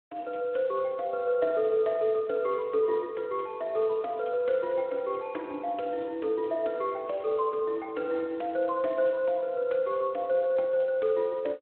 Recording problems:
phone line; 240 Hz to 3.6 kHz, Speex

